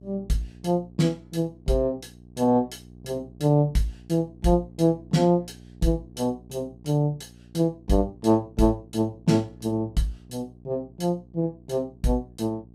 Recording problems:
hum; 60 Hz, harmonics up to 660 Hz, SNR 23 dB

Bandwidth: 15.5 kHz